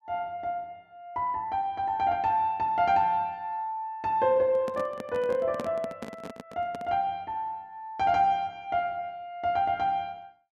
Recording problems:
microphone handling noise; from 4.5 to 7 s; peak -3 dB vs average level

